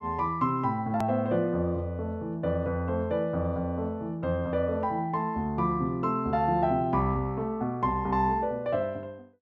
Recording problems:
hard cut with a click; at 1 s

